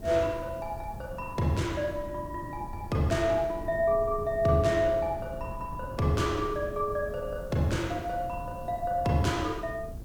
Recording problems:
hiss; SNR 29 dB
wind noise; below 180 Hz, SNR 13 dB

